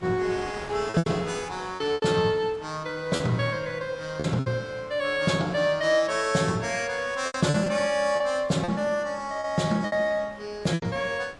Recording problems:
lossy codec; MP3, log-spectral distance 2 dB, nothing above 11 kHz
wind noise; below 1.8 kHz, SNR 20 dB
packet loss; 7% of the sound replaced, filled with repeated pitch periods

